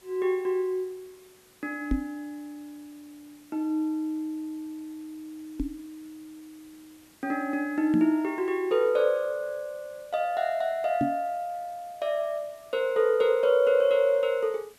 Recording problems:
hiss; slope -2 dB per octave, SNR 29 dB
knock on the microphone; 4 times, first at 2 s; peak +4 dB vs average level

